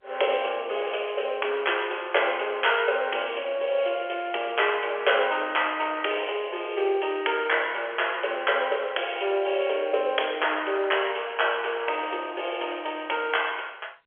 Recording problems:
telephone audio; 340 Hz to 3.4 kHz, G.711

